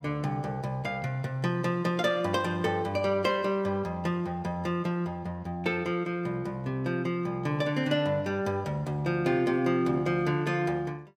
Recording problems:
none

